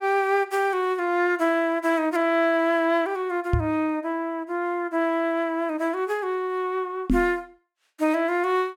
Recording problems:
microphone thump; at 3.5 s and at 7 s; peak +5 dB vs average level

